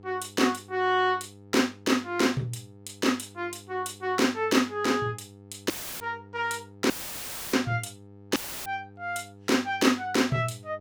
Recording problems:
electrical hum; 50 Hz, harmonics up to 900 Hz, SNR 22 dB
dropout; at 5.5 s, at 7 s for 0.5 s and at 8.5 s; filled with static

